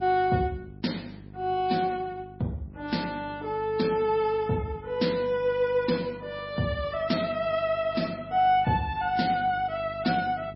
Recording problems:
codec artefacts; MP3, log-spectral distance 3 dB, nothing above 5.5 kHz
electrical hum; 50 Hz, harmonics up to 750 Hz, SNR 19 dB

